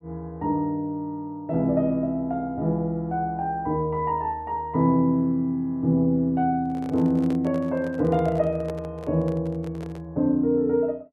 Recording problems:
microphone handling noise; from 6.5 to 10 s; peak -7 dB vs average level

